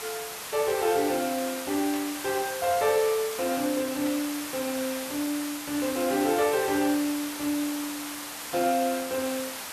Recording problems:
background hiss; SNR 7 dB
burst of static; at 2 s and at 4 s; peak -10 dB vs average level

